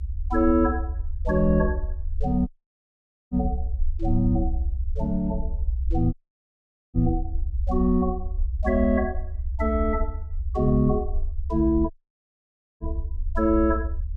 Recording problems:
low-frequency rumble; below 64 Hz, SNR 5 dB
audio cutting out; at 2.5 s for 1 s, at 6 s for 1 s and at 12 s for 1 s

